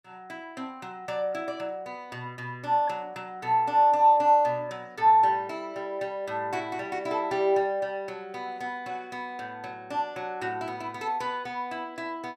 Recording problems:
none

